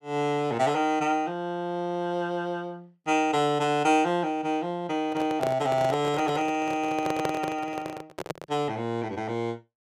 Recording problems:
handling noise; from 5 to 8.5 s; peak +1 dB vs average level

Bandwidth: 15 kHz